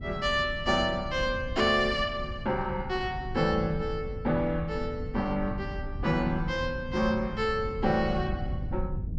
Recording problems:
hum; 50 Hz, harmonics up to 300 Hz, SNR 17 dB
rumble; below 120 Hz, SNR 10 dB

